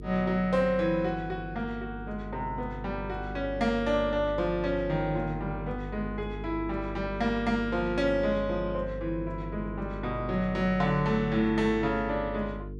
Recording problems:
hum; 50 Hz, harmonics up to 450 Hz, SNR 10 dB

